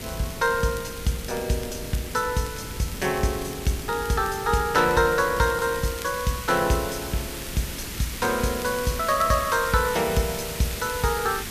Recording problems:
background hiss; SNR 10 dB
wind on the microphone; below 300 Hz, SNR 16 dB
crackle; vinyl, SNR 20 dB

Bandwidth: 14.5 kHz